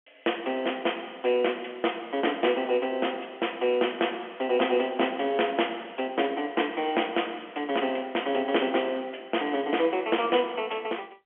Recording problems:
telephone audio; 260 Hz to 3.3 kHz, G.711

